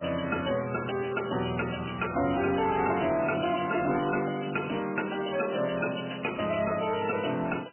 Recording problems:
codec artefacts; MP3, log-spectral distance 13 dB, nothing above 3 kHz
distortion; soft clipping, signal-to-distortion ratio 11 dB

